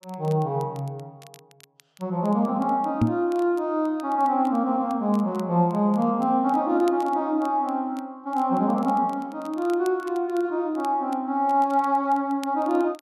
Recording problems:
crackle; vinyl, SNR 28 dB
microphone thump; at 3 s; peak +6 dB vs average level

